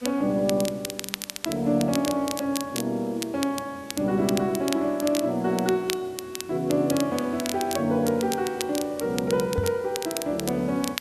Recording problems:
background hiss; slope -1 dB per octave, SNR 24 dB
crackle; vinyl, SNR 9 dB
microphone bump; at 9.5 s; peak +2 dB vs average level

